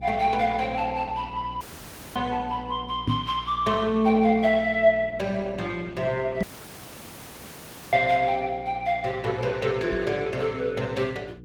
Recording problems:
lossy codec; Opus, log-spectral distance 4 dB
mains hum; 60 Hz, harmonics up to 480 Hz, SNR 17 dB
dropout; at 1.5 s for 0.5 s and at 6.5 s for 1.5 s
microphone bump; at 3 s, at 6.5 s and at 10 s; peak +3 dB vs average level

